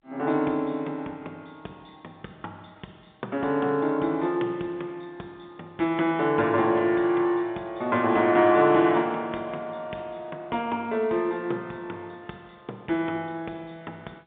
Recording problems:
telephone audio; 300 Hz to 3.6 kHz, G.711

